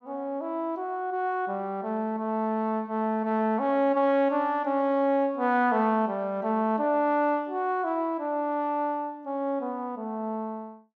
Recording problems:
none

